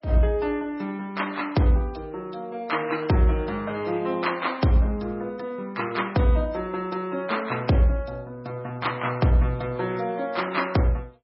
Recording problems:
lossy codec; MP3, log-spectral distance 4 dB, nothing above 5.3 kHz

